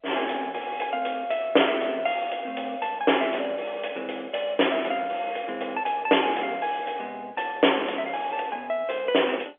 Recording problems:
phone line; 300 Hz to 3.5 kHz, G.711

